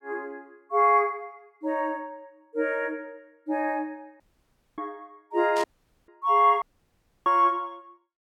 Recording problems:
audio cutting out; at 4 s for 0.5 s, at 5.5 s and at 6.5 s for 0.5 s
static burst; at 5.5 s; peak -8 dB vs average level

